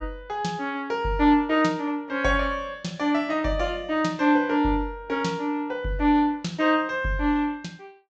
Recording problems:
low-pass filter; nothing above 8 kHz

